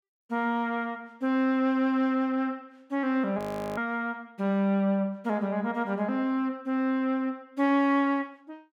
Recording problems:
audio freezing; at 3.5 s

